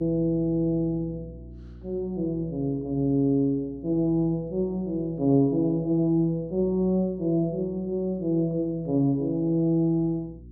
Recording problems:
mains hum; 60 Hz, harmonics up to 360 Hz, SNR 21 dB

